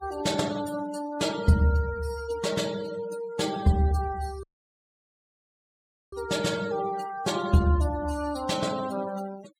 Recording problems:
noise reduction artefacts; signal-to-artefact ratio 16 dB
audio cutting out; at 4.5 s for 1.5 s

